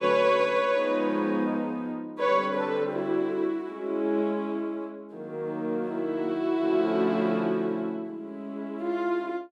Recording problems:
none

